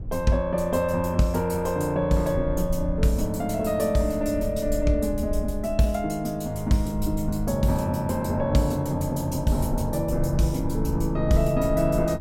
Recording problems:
low-frequency rumble; below 76 Hz, SNR 11 dB

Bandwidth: 16 kHz